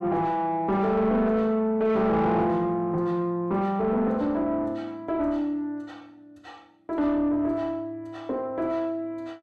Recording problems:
distorted audio; soft clipping, signal-to-distortion ratio 10 dB

